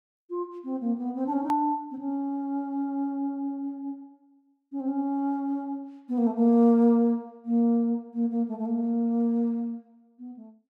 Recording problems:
hard cut with a click; at 1.5 s

